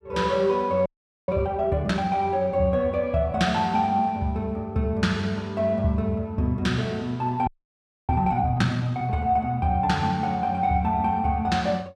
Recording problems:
frozen audio; at 1 s and at 7.5 s for 0.5 s

